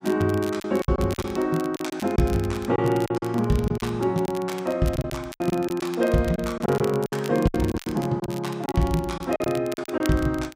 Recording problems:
crackle; vinyl, SNR 17 dB
packet loss; 12% of the sound replaced, filled with silence

